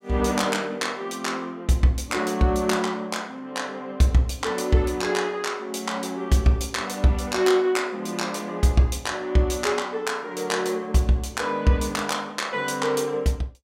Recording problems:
none

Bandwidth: 16 kHz